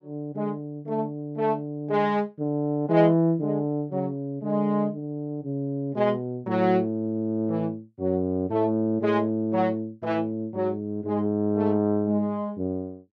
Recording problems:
none

